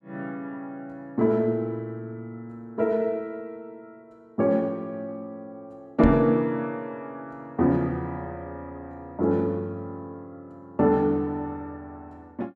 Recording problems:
microphone thump; at 6 s; peak +3 dB vs average level

